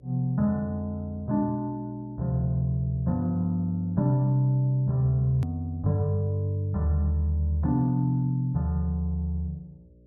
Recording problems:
hum; 60 Hz, harmonics up to 600 Hz, SNR 29 dB
edit click; at 5.5 s

